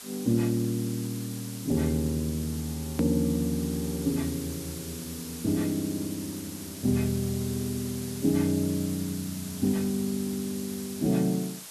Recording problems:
background hiss; slope +1 dB per octave, SNR 11 dB
edit click; at 3 s

